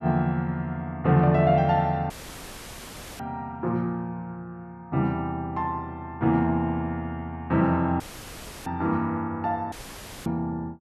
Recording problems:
dropout; at 2 s for 1 s, at 8 s for 0.5 s and at 9.5 s for 0.5 s; filled with static

